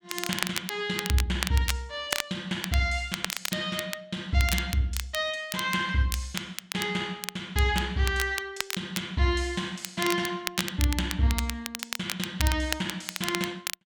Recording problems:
crackling; vinyl, SNR 5 dB

